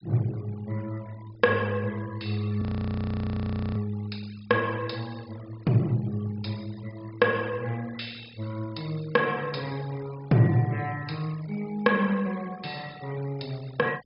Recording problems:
low-pass filter; nothing above 5.5 kHz
noise reduction artefacts; signal-to-artefact ratio 21 dB
audio freezing; at 2.5 s for 1 s

